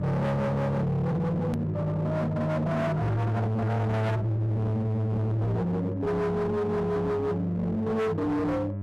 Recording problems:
distorted audio; hard clipping, signal-to-distortion ratio 6 dB
electrical hum; 50 Hz, harmonics up to 700 Hz, SNR 8 dB
click at an edit; at 1.5 s

